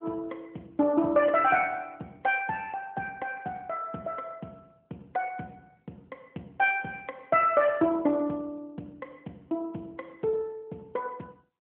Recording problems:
phone line; 150 Hz to 3.9 kHz, AMR-NB

